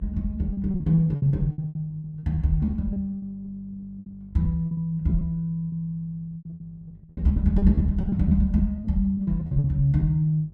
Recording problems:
electrical hum; 50 Hz, harmonics up to 400 Hz, SNR 24 dB
lost packets; 17% of the sound replaced, filled with repeated pitch periods

